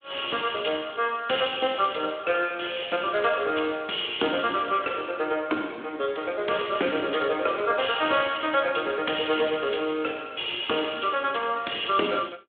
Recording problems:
phone line; 260 Hz to 3.6 kHz, Speex

